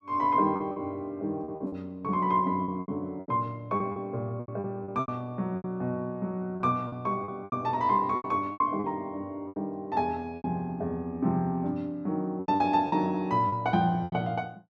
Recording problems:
packet loss; 11% of the sound replaced, filled with repeated pitch periods

